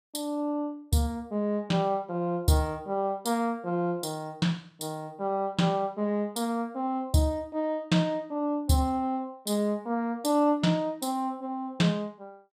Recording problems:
none

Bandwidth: 15.5 kHz